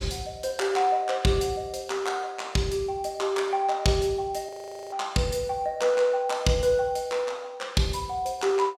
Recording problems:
frozen audio; at 4.5 s

